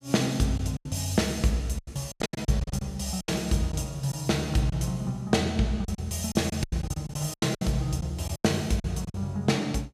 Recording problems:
packet loss; 12% of the sound replaced, filled with silence

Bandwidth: 15 kHz